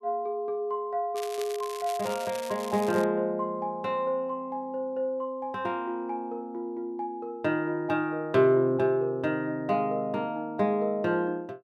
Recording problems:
crackle; from 1 to 3 s; loose cable, SNR 14 dB

